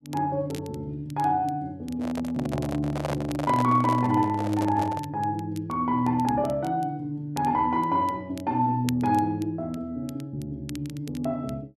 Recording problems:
crackling; vinyl, SNR 22 dB
handling noise; from 2 to 5 s; peak 0 dB vs average level

